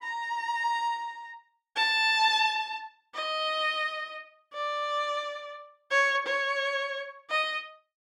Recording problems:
none

